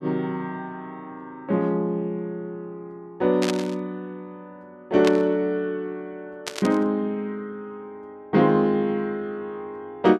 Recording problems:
static burst; at 3.5 s, at 5 s and at 6.5 s; peak +1 dB vs average level

